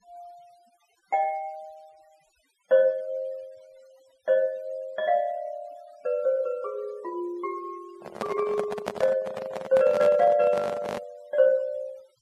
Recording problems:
noise reduction artefacts; signal-to-artefact ratio 27 dB
microphone handling noise; from 8 to 11 s; peak -1 dB vs average level

